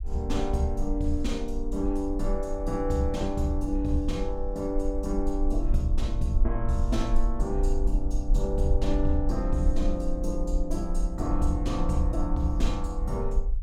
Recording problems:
rumble; below 44 Hz, strongest tone 20 Hz, SNR 2 dB

